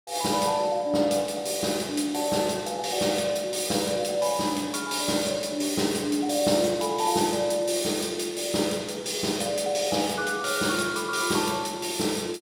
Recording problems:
none

